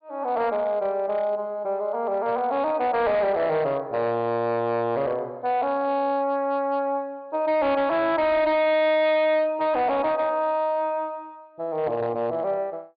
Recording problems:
low-pass filter; nothing above 4.8 kHz
distortion; hard clipping, signal-to-distortion ratio 11 dB

